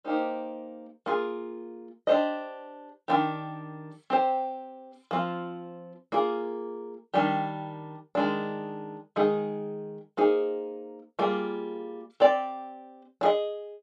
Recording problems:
none

